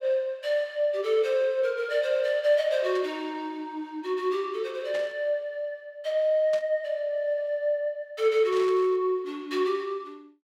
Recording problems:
burst of static; 4 times, first at 3 s; peak -10 dB vs average level

